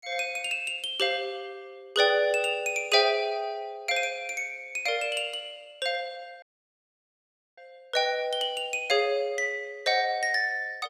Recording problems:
audio cutting out; at 6.5 s for 1 s

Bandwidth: 15 kHz